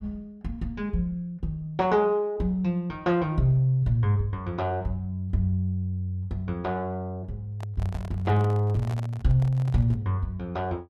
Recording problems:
handling noise; from 7.5 to 10 s; peak -9 dB vs average level

